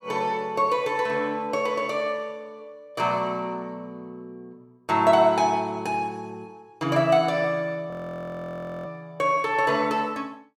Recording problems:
audio freezing; at 8 s for 1 s

